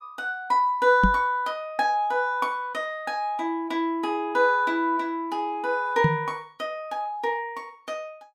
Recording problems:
knock on the microphone; at 1 s and at 6 s; peak +7 dB vs average level

